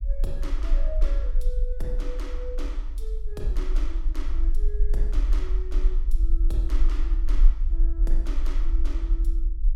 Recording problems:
low-frequency rumble; below 42 Hz, SNR -13 dB

